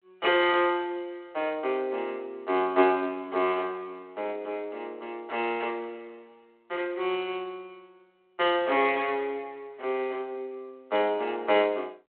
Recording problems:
phone line; 280 Hz to 3.8 kHz, G.726

